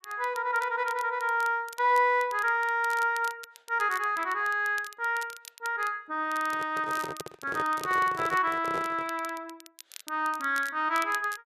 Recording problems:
crackling; vinyl, SNR 19 dB
microphone handling noise; from 6.5 to 9 s; peak -5 dB vs average level

